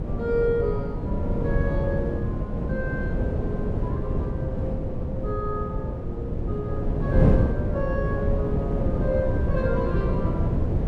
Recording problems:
wind on the microphone; below 220 Hz, SNR -4 dB

